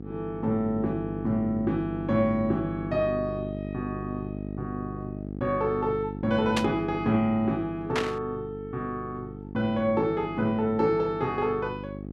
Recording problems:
electrical hum; 50 Hz, harmonics up to 800 Hz, SNR 8 dB
static burst; at 6.5 s and at 8 s; peak +3 dB vs average level

